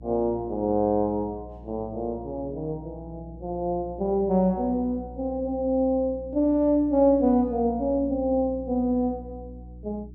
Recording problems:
electrical hum; 60 Hz, harmonics up to 360 Hz, SNR 17 dB

